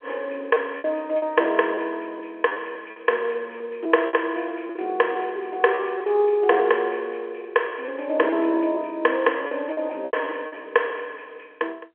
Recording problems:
telephone audio; 300 Hz to 3.3 kHz, G.711
packet loss; 9% of the sound replaced, filled with repeated pitch periods

